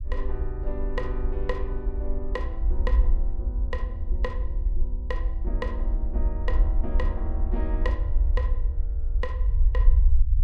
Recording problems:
low-frequency rumble; below 56 Hz, SNR -9 dB

